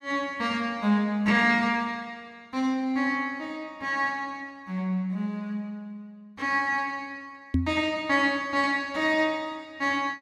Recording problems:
microphone bump; at 7.5 s; peak +6 dB vs average level

